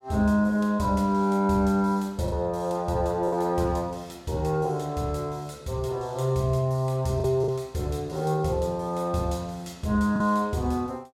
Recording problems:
lost packets; 1.8% of the sound replaced, filled with the last packet

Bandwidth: 16 kHz